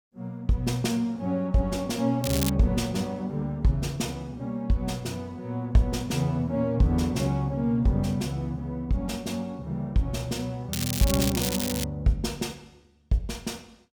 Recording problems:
crackling; at 2 s and from 11 to 12 s; loose cable, SNR 4 dB

